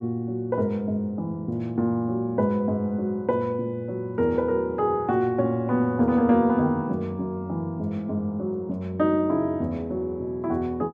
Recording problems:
none

